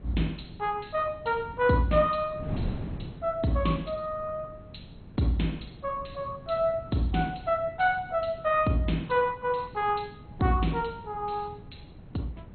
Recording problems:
lossy codec; MP2, log-spectral distance 3 dB, nothing above 4.2 kHz
wind noise; below 230 Hz, SNR 15 dB

